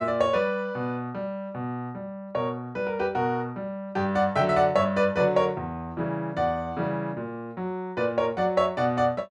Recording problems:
none

